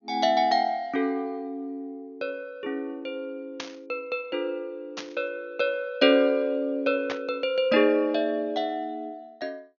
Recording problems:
treble cut off; nothing above 6.8 kHz
static burst; at 3.5 s, at 5 s and at 7 s; peak -3 dB vs average level

